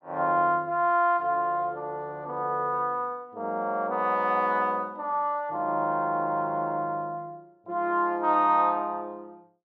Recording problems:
none

